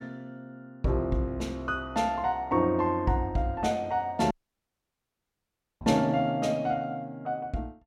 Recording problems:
dropout; at 4.5 s for 1.5 s

